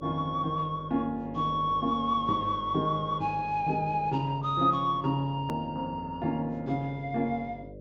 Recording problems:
treble missing; nothing above 8 kHz
hum; 50 Hz, harmonics up to 600 Hz, SNR 18 dB
click at an edit; at 5.5 s

